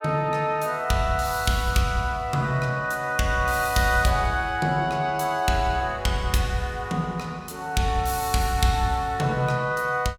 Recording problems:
none

